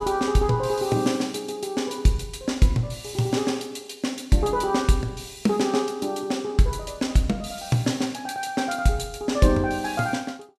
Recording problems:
none

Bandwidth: 14.5 kHz